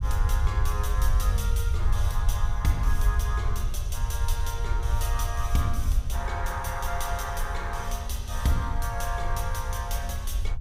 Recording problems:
low-frequency rumble; below 70 Hz, SNR -3 dB

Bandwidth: 15.5 kHz